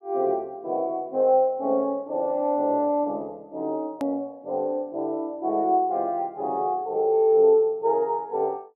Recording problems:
edit click; at 4 s

